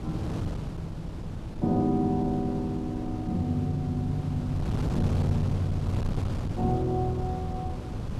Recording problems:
wind noise; below 230 Hz, SNR 5 dB

